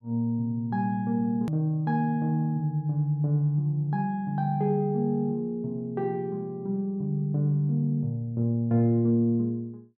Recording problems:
edit click; at 1.5 s

